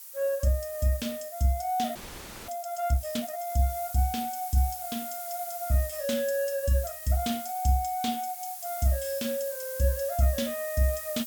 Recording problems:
background hiss; slope +2 dB per octave, SNR 9 dB
frozen audio; at 2 s for 0.5 s

